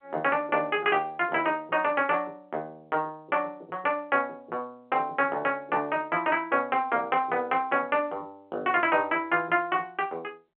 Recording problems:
phone line; 280 Hz to 3.3 kHz, G.711

